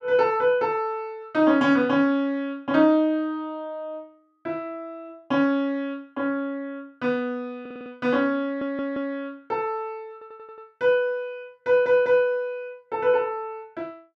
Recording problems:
audio stuttering; 4 times, first at 7.5 s

